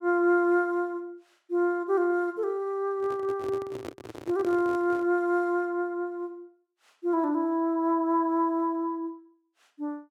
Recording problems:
microphone handling noise; from 3 to 5 s; peak -6 dB vs average level

